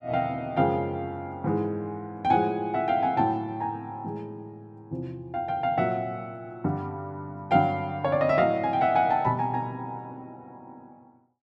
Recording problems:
none

